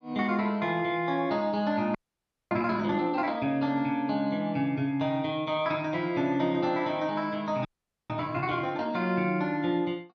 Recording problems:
audio freezing; at 2 s for 0.5 s and at 7.5 s

